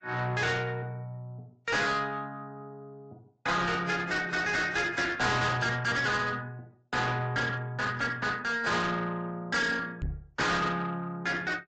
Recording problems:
treble missing; nothing above 7.6 kHz
lossy codec; AAC, then AAC, log-spectral distance 2 dB
distorted audio; soft clipping, signal-to-distortion ratio 6 dB
knock on the microphone; at 10 s; peak -2 dB vs average level

